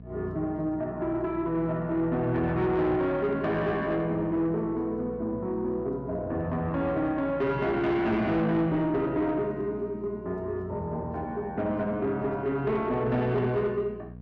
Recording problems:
distorted audio; soft clipping, signal-to-distortion ratio 11 dB
hum; 60 Hz, harmonics up to 720 Hz, SNR 17 dB

